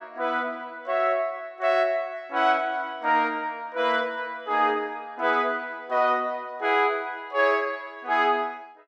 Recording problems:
none

